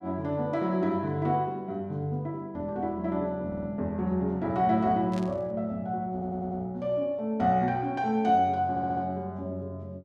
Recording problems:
stutter; at 3.5 s, at 6 s and at 8.5 s
static burst; at 5 s; peak -12 dB vs average level

